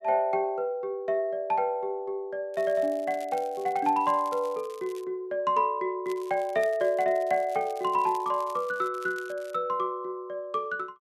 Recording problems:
crackling; from 2.5 to 5 s and from 6 to 9.5 s; loose cable, SNR 24 dB

